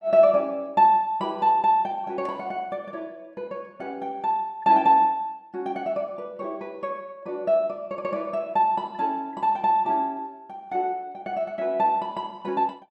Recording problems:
none

